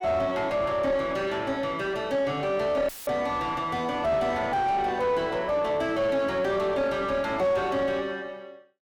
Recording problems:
distorted audio; soft clipping, signal-to-distortion ratio 7 dB
dropout; at 3 s; filled with static

